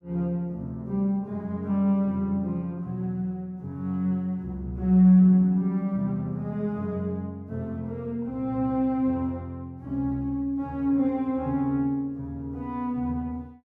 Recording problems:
none

